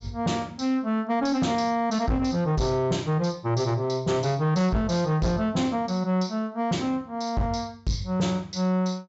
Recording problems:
low-pass filter; nothing above 7.6 kHz
distorted audio; soft clipping, signal-to-distortion ratio 11 dB

